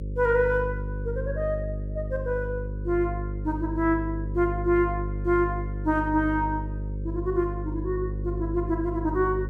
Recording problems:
hum; 50 Hz, harmonics up to 550 Hz, SNR 5 dB

